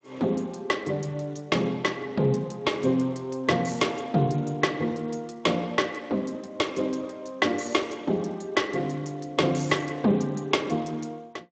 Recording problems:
lossy codec; Speex, log-spectral distance 5 dB, nothing above 7.3 kHz

